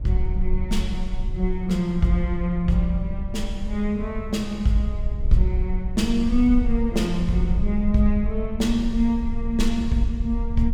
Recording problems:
low-frequency rumble; below 54 Hz, strongest tone 20 Hz, SNR 6 dB

